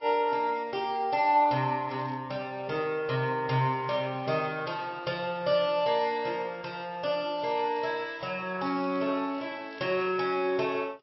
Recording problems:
low-pass filter; nothing above 5.5 kHz
lossy codec; Vorbis, log-spectral distance 3 dB
crackling; at 2 s, at 7.5 s and from 8.5 to 10 s; loose cable, SNR 27 dB

